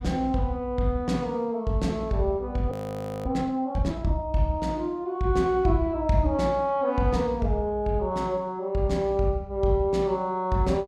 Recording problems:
frozen audio; at 2.5 s for 0.5 s

